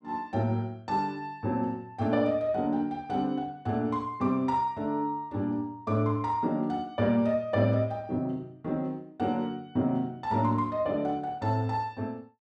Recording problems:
none

